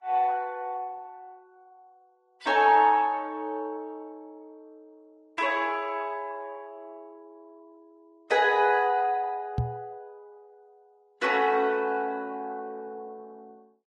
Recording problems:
lossy codec; Opus, then Vorbis, log-spectral distance 2 dB, nothing above 11 kHz
microphone thump; at 9.5 s; peak +1 dB vs average level

